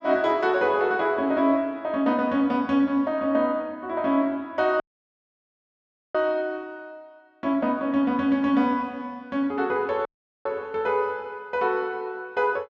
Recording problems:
audio cutting out; at 5 s for 1.5 s and at 10 s

